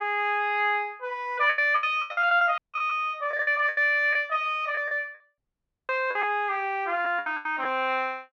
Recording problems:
packet loss; 11% of the sound replaced, filled with the last packet
dropout; at 2.5 s and at 5.5 s for 0.5 s

